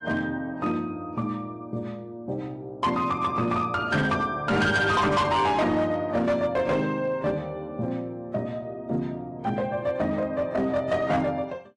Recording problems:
lossy compression; AAC, log-spectral distance 2 dB, nothing above 10.4 kHz
distorted audio; hard clipping, signal-to-distortion ratio 10 dB

